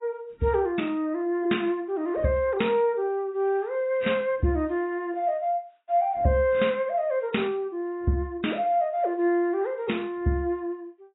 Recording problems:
lossy compression; AAC, log-spectral distance 2 dB, nothing above 3.8 kHz

